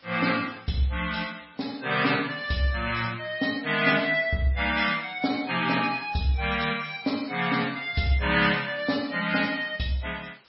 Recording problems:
lossy compression; MP3, log-spectral distance 7 dB, nothing above 5.3 kHz
hiss; SNR 30 dB

